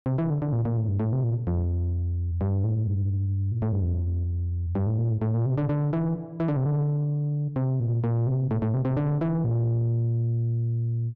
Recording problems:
distortion; soft clipping, signal-to-distortion ratio 10 dB

